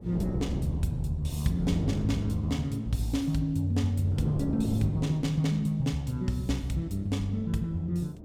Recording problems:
wind on the microphone; below 320 Hz, SNR 10 dB

